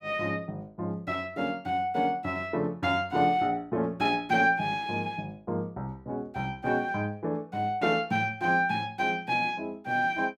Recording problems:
none

